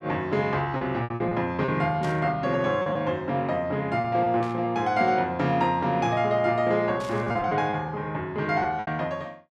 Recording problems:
packet loss; 7% of the sound replaced, filled with repeated pitch periods
burst of static; at 2 s, at 4.5 s and at 7 s; peak -12 dB vs average level

